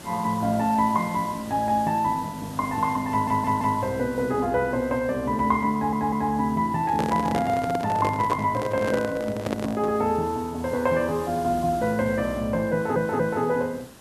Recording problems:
background hiss; SNR 19 dB
stutter; at 3 s, at 5.5 s and at 13 s
microphone handling noise; from 7 to 10 s; peak 0 dB vs average level

